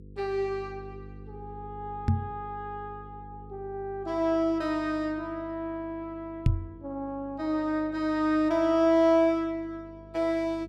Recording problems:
hum; 50 Hz, harmonics up to 500 Hz, SNR 19 dB
microphone thump; at 2 s and at 6.5 s; peak +8 dB vs average level

